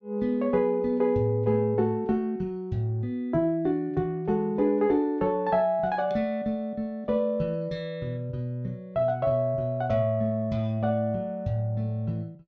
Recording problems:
treble cut off; nothing above 8 kHz

